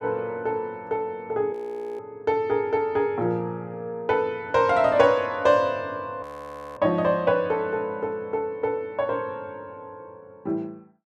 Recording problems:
audio freezing; at 1.5 s and at 6 s for 0.5 s

